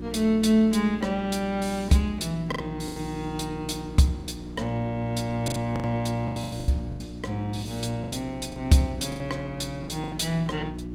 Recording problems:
hum; 60 Hz, harmonics up to 360 Hz, SNR 12 dB
wind on the microphone; below 520 Hz, SNR 24 dB
packet loss; 9% of the sound replaced, filled with the last packet

